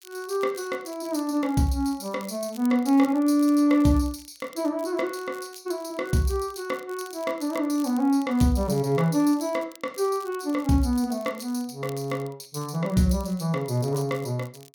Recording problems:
crackle; vinyl, SNR 24 dB

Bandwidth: 18.5 kHz